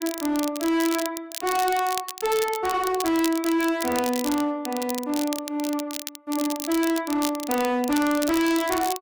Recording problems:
distortion; hard clipping, uneven, signal-to-distortion ratio 7 dB
crackling; vinyl, SNR 9 dB

